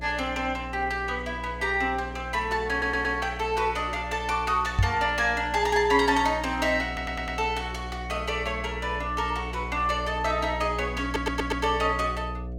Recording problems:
hum; 60 Hz, harmonics up to 720 Hz, SNR 11 dB
audio stuttering; at 2.5 s, at 7 s and at 11 s
microphone thump; at 5 s; peak +6 dB vs average level

